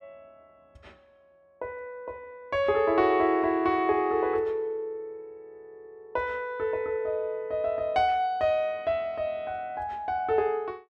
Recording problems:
none

